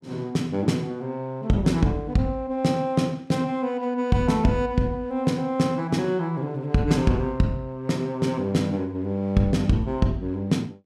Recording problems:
none

